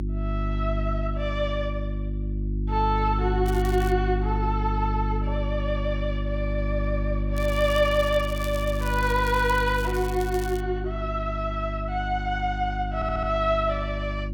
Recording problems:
electrical hum; 50 Hz, harmonics up to 350 Hz, SNR 2 dB
crackling; at 3.5 s and from 7.5 to 11 s; loose cable, SNR 16 dB
stutter; at 13 s

